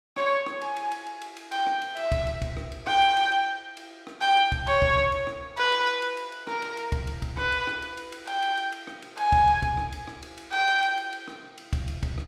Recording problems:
none

